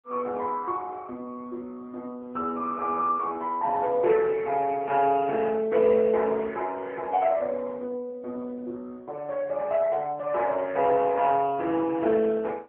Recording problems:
telephone audio; 280 Hz to 2.6 kHz, AMR-NB

